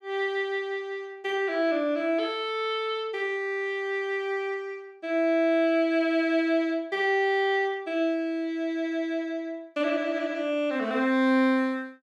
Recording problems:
none

